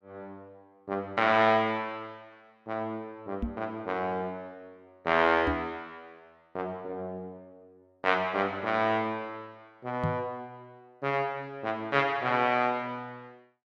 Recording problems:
knock on the microphone; at 3.5 s, at 5.5 s and at 10 s; peak +2 dB vs average level

